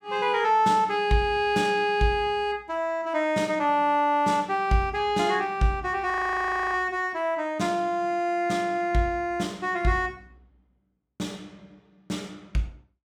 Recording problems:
audio freezing; at 6 s for 0.5 s

